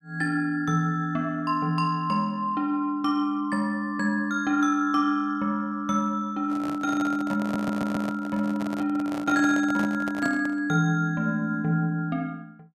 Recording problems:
handling noise; from 6.5 to 11 s; peak -5 dB vs average level
stutter; at 7.5 s

